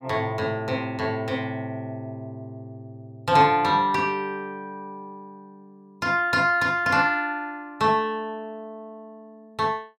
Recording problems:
none

